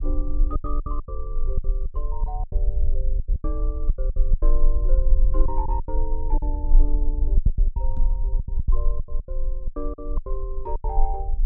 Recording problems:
low-frequency rumble; below 40 Hz, strongest tone 22 Hz, SNR -10 dB
lost packets; 16% of the sound replaced, filled with silence
microphone bump; at 8 s; peak +4 dB vs average level

